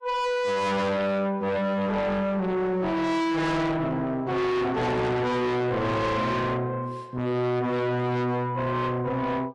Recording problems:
lossy codec; AAC, log-spectral distance 2 dB, nothing above 11 kHz
distortion; soft clipping, signal-to-distortion ratio 6 dB

